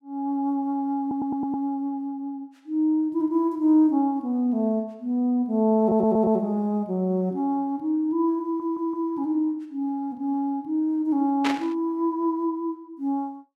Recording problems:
audio stuttering; at 1 s, at 6 s and at 8.5 s
burst of static; at 11 s; peak +1 dB vs average level

